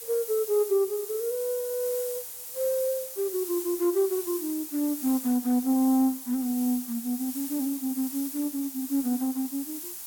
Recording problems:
background hiss; SNR 8 dB

